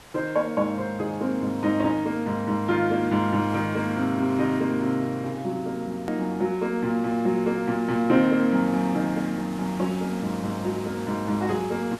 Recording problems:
hiss; slope -3 dB per octave, SNR 20 dB
hard cut with a click; at 6 s

